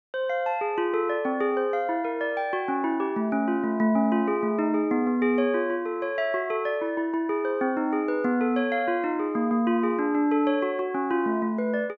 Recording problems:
treble missing; nothing above 8 kHz

